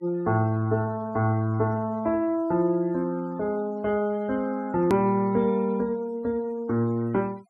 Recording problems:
noise reduction artefacts; signal-to-artefact ratio 27 dB
edit click; at 5 s

